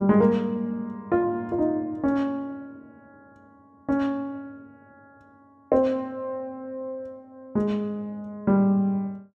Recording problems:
none

